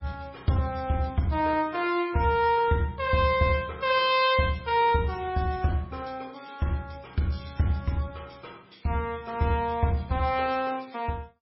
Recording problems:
codec artefacts; MP3, log-spectral distance 4 dB, nothing above 4.8 kHz

